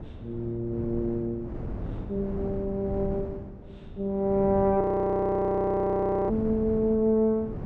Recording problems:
wind noise; below 260 Hz, SNR 11 dB
frozen audio; at 5 s for 1.5 s

